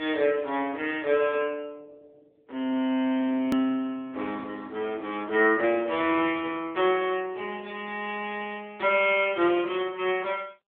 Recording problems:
phone line; 240 Hz to 3.5 kHz, AMR-NB
click at an edit; at 3.5 s

